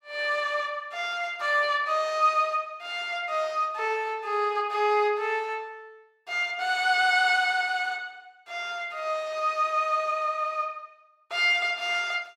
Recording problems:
none

